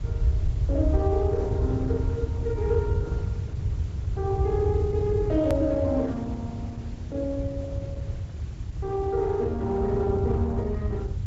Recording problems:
treble cut off; nothing above 8 kHz
lossy compression; Opus, log-spectral distance 2 dB
background hiss; slope -5 dB per octave, SNR 22 dB
low-frequency rumble; below 100 Hz, SNR 0 dB
hard cut with a click; at 5.5 s

